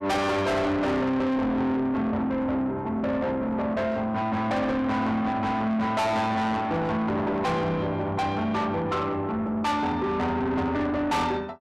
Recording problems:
distorted audio; soft clipping, signal-to-distortion ratio 7 dB

